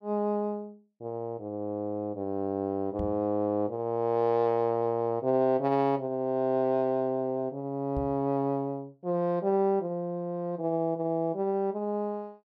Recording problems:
microphone bump; at 3 s and at 8 s; peak -3 dB vs average level

